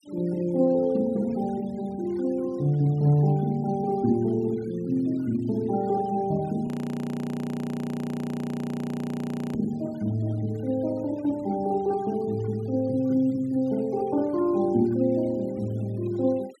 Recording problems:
denoising artefacts; signal-to-artefact ratio 26 dB
audio freezing; at 6.5 s for 3 s

